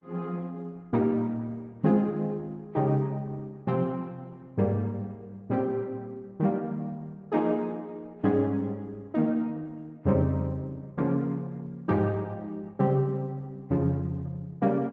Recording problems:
codec artefacts; AAC, then Opus, log-spectral distance 2 dB

